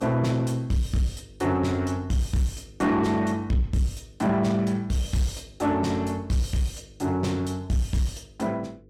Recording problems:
distorted audio; soft clipping, signal-to-distortion ratio 10 dB
hum; 50 Hz, harmonics up to 500 Hz, SNR 26 dB

